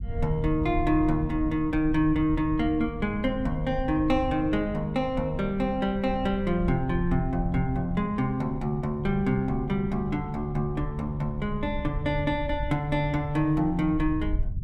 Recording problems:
rumble; below 88 Hz, SNR 9 dB

